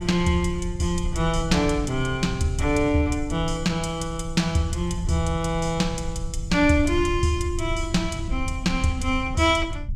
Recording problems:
rumble; below 88 Hz, SNR 9 dB

